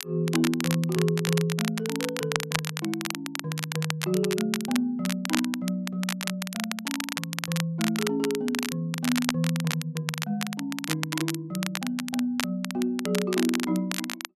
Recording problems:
crackling; vinyl, SNR 4 dB

